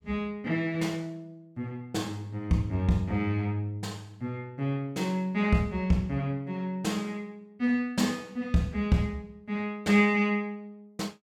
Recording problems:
none

